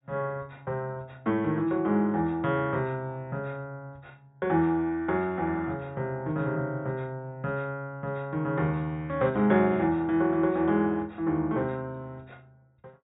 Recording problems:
treble missing; nothing above 4 kHz

